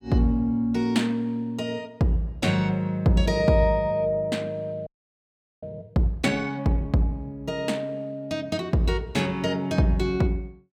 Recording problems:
audio freezing; at 5 s for 1 s

